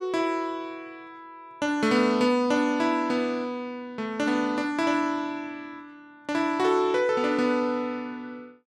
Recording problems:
none

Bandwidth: 13.5 kHz